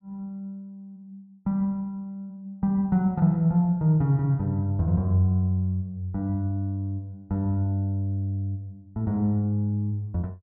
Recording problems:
none

